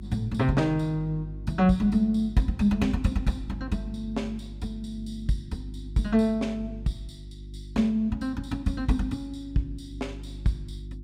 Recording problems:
hum; 50 Hz, harmonics up to 350 Hz, SNR 13 dB

